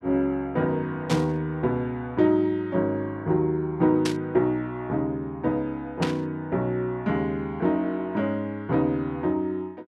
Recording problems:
static burst; at 1 s, at 4 s and at 6 s; peak 0 dB vs average level

